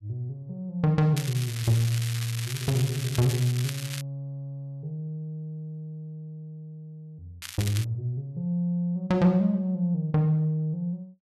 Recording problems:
crackling; from 1 to 4 s and at 7.5 s; loose cable, SNR 9 dB

